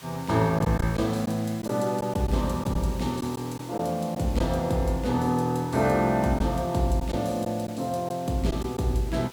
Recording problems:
hiss; slope 0 dB per octave, SNR 20 dB
lost packets; 3% of the sound replaced, filled with silence

